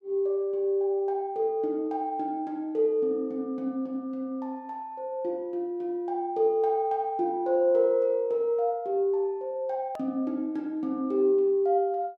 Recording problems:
hard cut with a click; at 10 s

